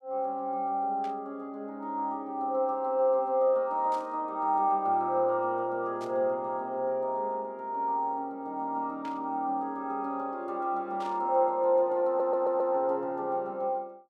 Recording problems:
static burst; 5 times, first at 1 s; peak -15 dB vs average level
audio stuttering; at 12 s

